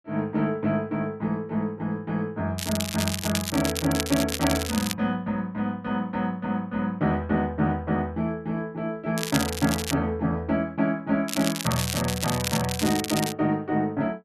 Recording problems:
crackling; from 2.5 to 5 s, at 9 s and from 11 to 13 s; loose cable, SNR 4 dB

